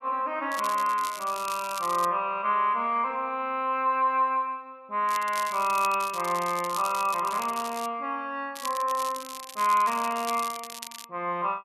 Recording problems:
crackling; from 0.5 to 2 s, from 5 to 8 s and from 8.5 to 11 s; loose cable, SNR 13 dB

